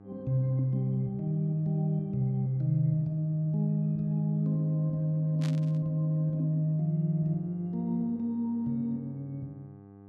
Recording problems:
mains hum; 50 Hz, harmonics up to 1.2 kHz, SNR 23 dB
burst of static; at 5.5 s; peak -10 dB vs average level

